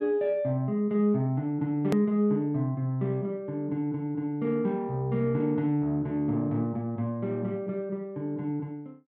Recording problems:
click at an edit; at 2 s

